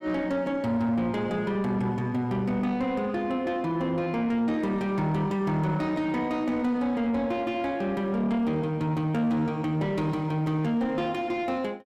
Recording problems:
distorted audio; soft clipping, signal-to-distortion ratio 12 dB

